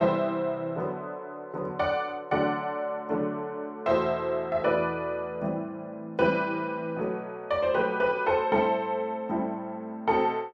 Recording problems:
none

